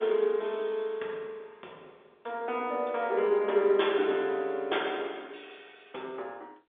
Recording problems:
telephone audio; 300 Hz to 3.6 kHz, G.711

